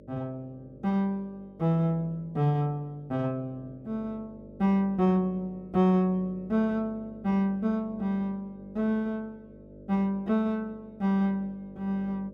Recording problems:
hum; 50 Hz, harmonics up to 600 Hz, SNR 21 dB

